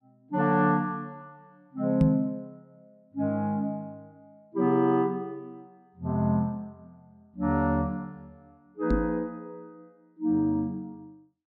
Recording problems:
knock on the microphone; at 2 s and at 9 s; peak +8 dB vs average level

